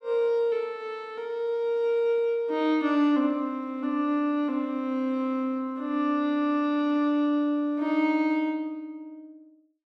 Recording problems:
none

